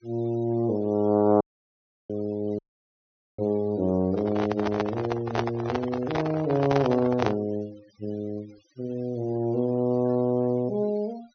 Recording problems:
low-pass filter; nothing above 6.4 kHz
denoising artefacts; signal-to-artefact ratio 23 dB
audio cutting out; at 1.5 s for 0.5 s and at 2.5 s for 1 s
microphone handling noise; from 4 to 7.5 s; peak +4 dB vs average level

